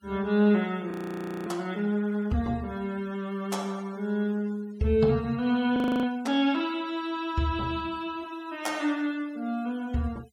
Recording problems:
noise reduction artefacts; signal-to-artefact ratio 26 dB
audio freezing; at 1 s for 0.5 s and at 6 s

